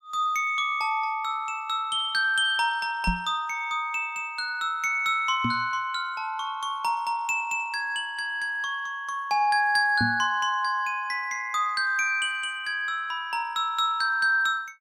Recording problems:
microphone bump; at 3 s, at 5.5 s and at 10 s; peak +2 dB vs average level

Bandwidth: 16 kHz